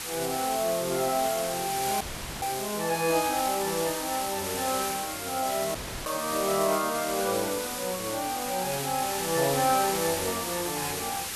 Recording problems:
background hiss; slope 0 dB per octave, SNR 3 dB
audio cutting out; at 2 s and at 6 s

